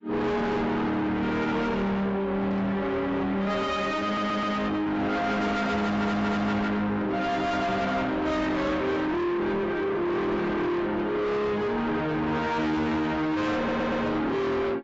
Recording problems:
lossy codec; AAC, log-spectral distance 2 dB, nothing above 7.6 kHz
distorted audio; soft clipping, signal-to-distortion ratio 6 dB
audio stuttering; at 4 s, at 6 s and at 14 s

